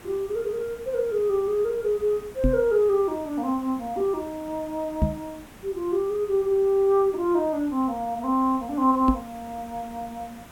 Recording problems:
hiss; SNR 21 dB
knock on the microphone; at 2.5 s, at 5 s and at 9 s; peak +5 dB vs average level

